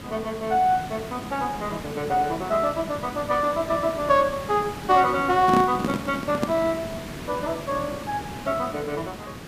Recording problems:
hiss; slope -5 dB per octave, SNR 11 dB
handling noise; from 5.5 to 6.5 s; peak +4 dB vs average level

